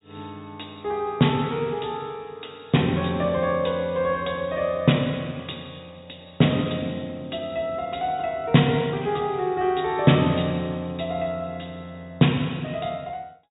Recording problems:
treble missing; nothing above 4 kHz

